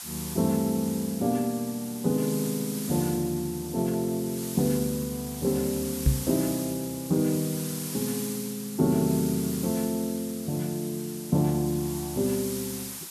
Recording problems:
hiss; slope +2 dB per octave, SNR 9 dB
microphone bump; at 6 s; peak +9 dB vs average level

